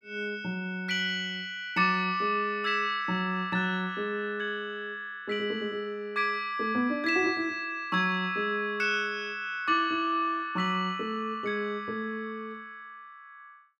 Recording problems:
none

